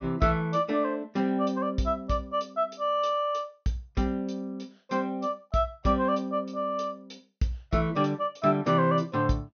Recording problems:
low-pass filter; nothing above 6.3 kHz

